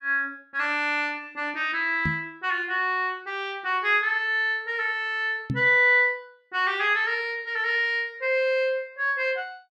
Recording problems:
microphone thump; at 2 s and at 5.5 s; peak 0 dB vs average level

